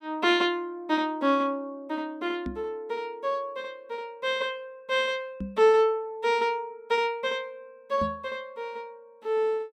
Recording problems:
knock on the microphone; at 2.5 s, at 5.5 s and at 8 s; peak -2 dB vs average level

